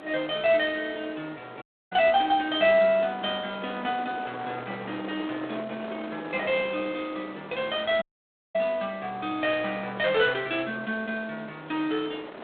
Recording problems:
telephone audio; 260 Hz to 3.7 kHz, G.726
wind noise; below 1.4 kHz, SNR 15 dB
dropout; at 1.5 s and at 8 s for 0.5 s

